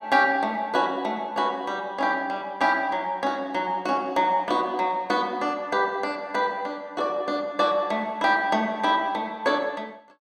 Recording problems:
none

